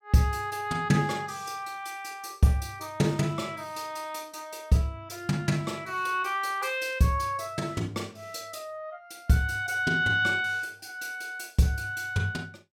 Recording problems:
none

